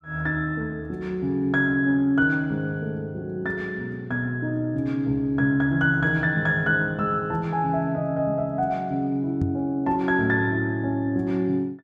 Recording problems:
knock on the microphone; at 9.5 s; peak +2 dB vs average level

